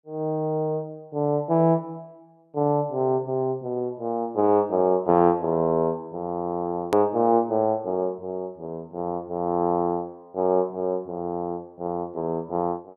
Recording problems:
hard cut with a click; at 7 s

